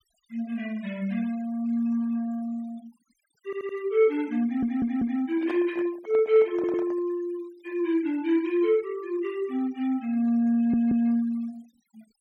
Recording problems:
denoising artefacts; signal-to-artefact ratio 25 dB
audio stuttering; 4 times, first at 3.5 s
handling noise; from 5.5 to 7 s; peak -8 dB vs average level

